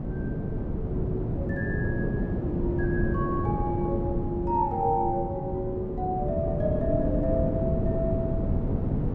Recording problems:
wind on the microphone; below 270 Hz, SNR -1 dB

